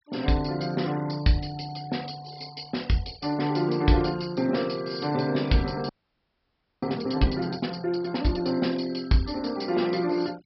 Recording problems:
low-pass filter; nothing above 5.5 kHz
noise reduction artefacts; signal-to-artefact ratio 21 dB
audio freezing; at 6 s for 1 s

